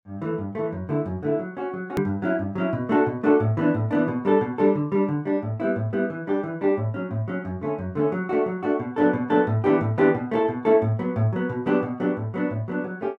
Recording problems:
hard cut with a click; at 2 s

